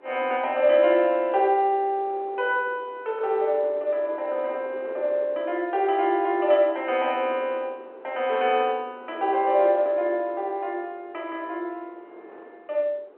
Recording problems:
phone line; 340 Hz to 3.3 kHz, G.711
wind on the microphone; below 740 Hz, SNR 21 dB

